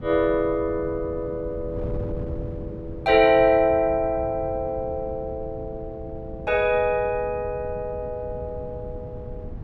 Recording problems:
wind noise; below 180 Hz, SNR 13 dB

